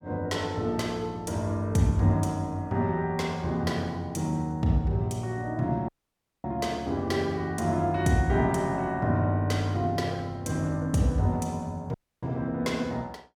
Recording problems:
audio cutting out; at 6 s for 0.5 s and at 12 s

